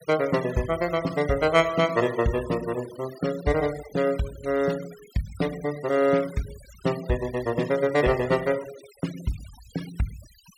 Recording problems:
denoising artefacts; signal-to-artefact ratio 18 dB

